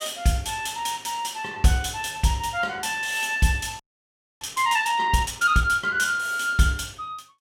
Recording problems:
audio freezing; at 4 s for 0.5 s

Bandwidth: 16 kHz